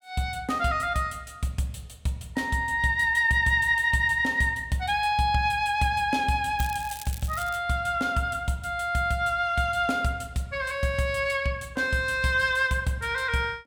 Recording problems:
crackling; at 6.5 s; loose cable, SNR 16 dB

